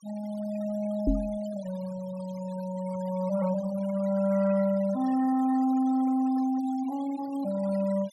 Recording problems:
noise reduction artefacts; signal-to-artefact ratio 18 dB
knock on the microphone; at 1 s; peak +6 dB vs average level

